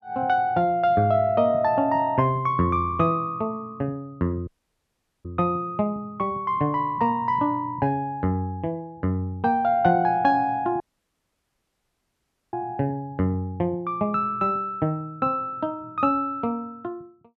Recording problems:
audio cutting out; at 4.5 s for 1 s and at 11 s for 1.5 s

